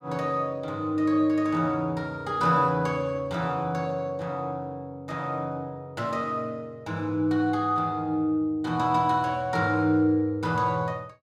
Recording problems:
none

